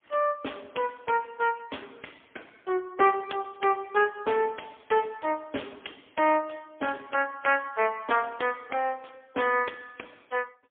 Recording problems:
telephone audio; 280 Hz to 3.3 kHz, AMR-NB, then MP3

